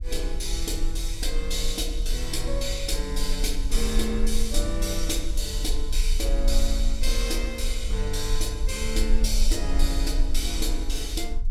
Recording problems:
low-frequency rumble; below 42 Hz, strongest tone 18 Hz, SNR 0 dB

